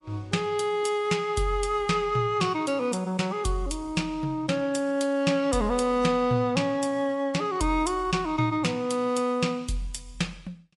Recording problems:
lossy codec; MP3, log-spectral distance 2 dB, nothing above 11 kHz

